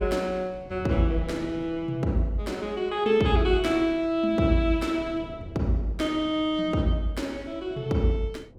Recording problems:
wind on the microphone; below 320 Hz, SNR 20 dB

